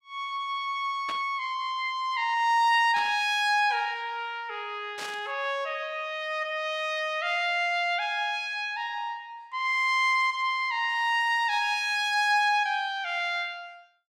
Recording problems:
static burst; at 1 s, at 3 s and at 5 s; peak -8 dB vs average level

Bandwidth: 16 kHz